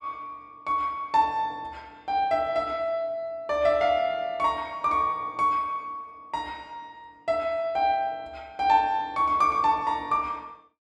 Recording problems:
none

